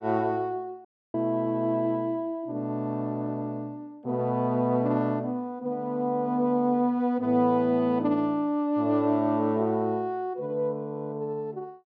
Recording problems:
dropout; at 1 s

